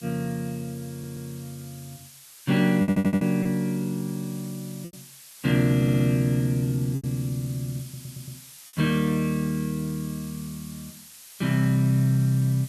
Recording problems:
background hiss; slope +3 dB per octave, SNR 19 dB
lost packets; 2% of the sound replaced, filled with repeated pitch periods
stutter; 4 times, first at 1 s

